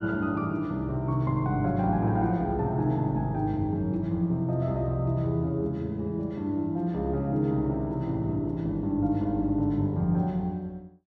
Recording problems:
none

